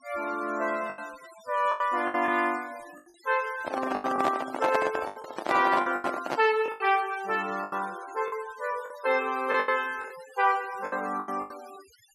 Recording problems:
noise reduction artefacts; signal-to-artefact ratio 19 dB
packet loss; 11% of the sound replaced, filled with the last packet
microphone handling noise; from 3.5 to 6.5 s; peak +3 dB vs average level

